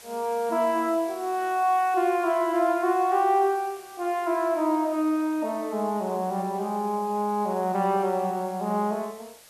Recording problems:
hiss; slope 0 dB per octave, SNR 22 dB

